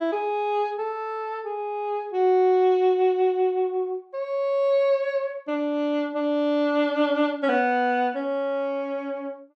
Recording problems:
none

